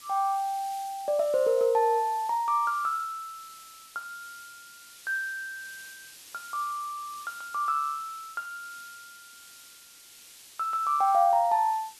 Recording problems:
background hiss; SNR 19 dB

